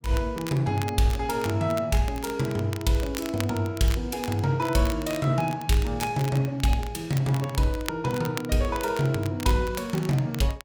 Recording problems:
crackle; vinyl, SNR 15 dB

